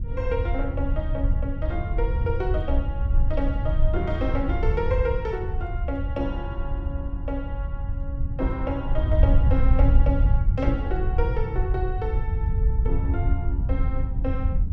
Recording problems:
wind noise; below 80 Hz, SNR -5 dB

